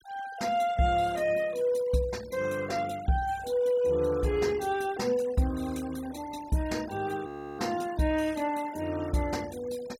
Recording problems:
noise reduction artefacts; signal-to-artefact ratio 19 dB
frozen audio; at 7.5 s

